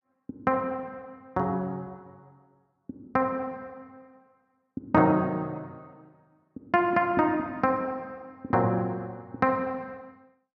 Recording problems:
none

